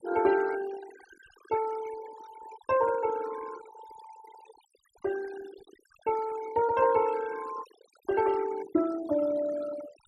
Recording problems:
denoising artefacts; signal-to-artefact ratio 16 dB

